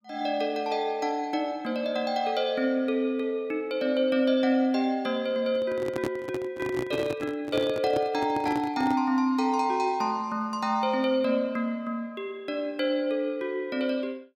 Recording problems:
handling noise; from 5.5 to 9 s; peak 0 dB vs average level

